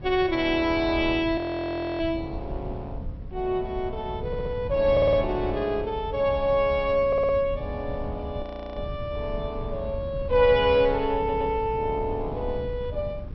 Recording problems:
treble cut off; nothing above 5.7 kHz
wind on the microphone; below 120 Hz, SNR 11 dB
audio freezing; at 1.5 s for 0.5 s and at 8.5 s
stutter; 4 times, first at 4.5 s

